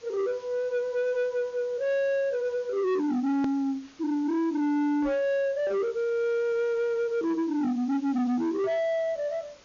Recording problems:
treble missing; nothing above 6.9 kHz
distortion; soft clipping, signal-to-distortion ratio 10 dB
hiss; slope -2 dB per octave, SNR 27 dB
click at an edit; at 3.5 s

